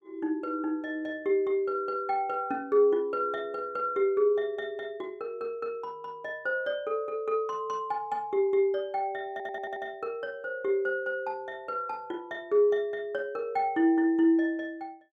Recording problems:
audio stuttering; at 9.5 s

